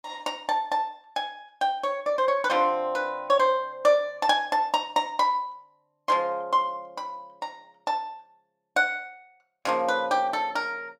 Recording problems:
none

